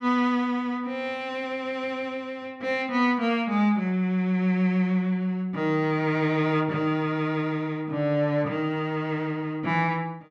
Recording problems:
none

